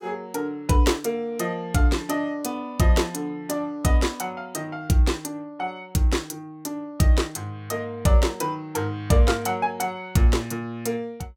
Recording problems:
none

